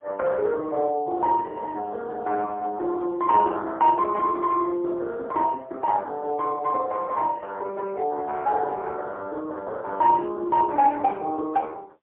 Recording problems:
telephone audio; 280 Hz to 2.1 kHz, AMR-NB, then MP3

